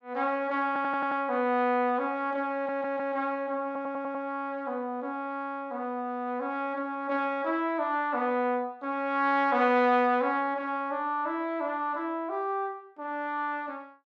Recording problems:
stutter; at 0.5 s, at 2.5 s and at 3.5 s

